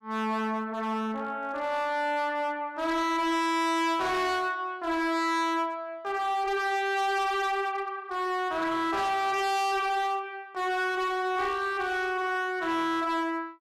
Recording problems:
distorted audio; hard clipping, signal-to-distortion ratio 7 dB

